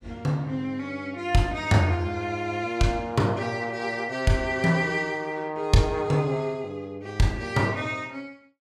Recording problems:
none

